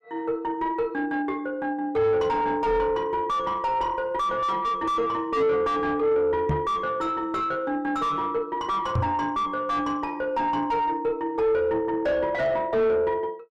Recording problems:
distorted audio; soft clipping, signal-to-distortion ratio 6 dB
knock on the microphone; at 6.5 s and at 9 s; peak +4 dB vs average level

